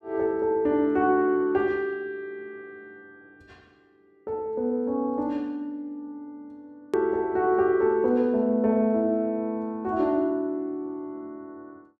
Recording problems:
edit click; at 7 s

